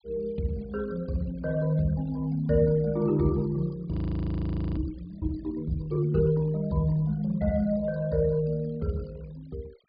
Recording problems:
treble missing; nothing above 4.8 kHz
noise reduction artefacts; signal-to-artefact ratio 27 dB
frozen audio; at 4 s for 1 s

